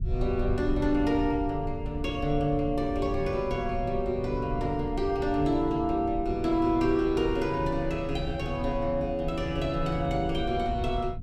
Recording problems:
low-frequency rumble; below 92 Hz, SNR 9 dB

